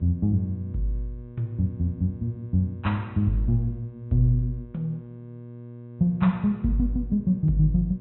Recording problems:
treble missing; nothing above 3.9 kHz
hum; 60 Hz, harmonics up to 600 Hz, SNR 16 dB

